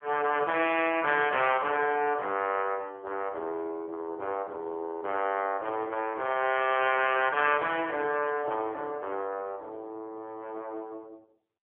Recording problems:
telephone audio; 300 Hz to 3.3 kHz, AMR-NB

